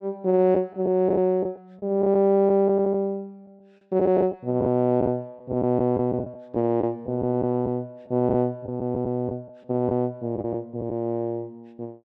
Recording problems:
lost packets; 6% of the sound replaced, filled with the last packet

